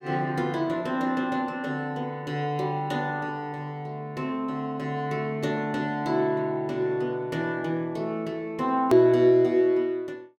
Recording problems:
click at an edit; at 9 s

